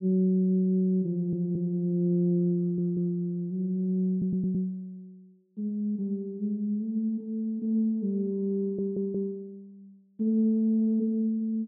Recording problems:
stutter; 4 times, first at 1 s

